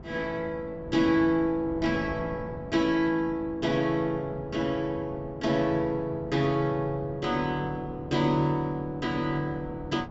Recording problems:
treble cut off; nothing above 8 kHz
wind on the microphone; below 410 Hz, SNR 14 dB

